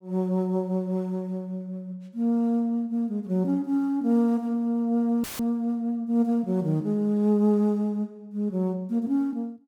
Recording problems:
dropout; at 5 s; filled with static

